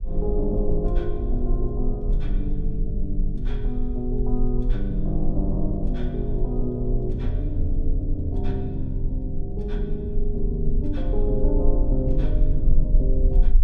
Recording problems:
low-frequency rumble; below 38 Hz, strongest tone 18 Hz, SNR 0 dB

